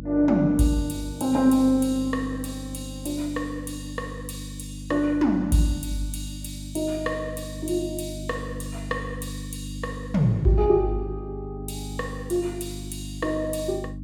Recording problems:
hum; 50 Hz, harmonics up to 300 Hz, SNR 11 dB

